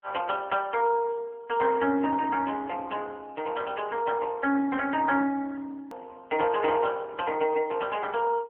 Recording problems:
telephone audio; 220 Hz to 3.1 kHz, AMR-NB
hard cut with a click; at 6 s

